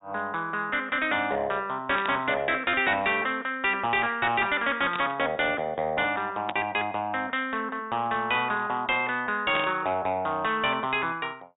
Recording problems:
treble missing; nothing above 4 kHz
distorted audio; soft clipping, signal-to-distortion ratio 10 dB
burst of static; 4 times, first at 2 s; peak -1 dB vs average level

